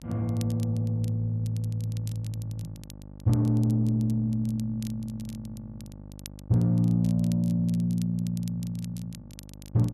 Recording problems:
mains hum; 50 Hz, harmonics up to 900 Hz, SNR 18 dB
crackle; vinyl, SNR 23 dB

